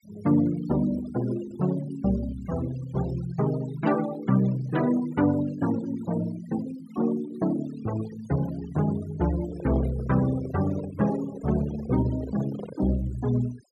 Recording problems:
denoising artefacts; signal-to-artefact ratio 17 dB
microphone handling noise; from 9.5 to 13 s; peak -8 dB vs average level

